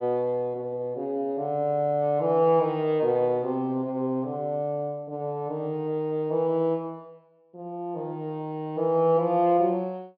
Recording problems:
treble cut off; nothing above 5.5 kHz

